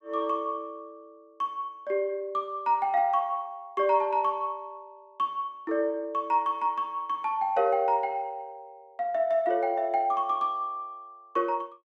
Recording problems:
none

